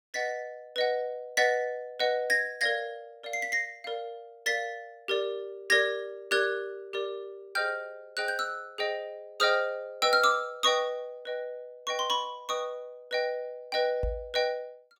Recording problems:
microphone thump; at 14 s; peak -1 dB vs average level

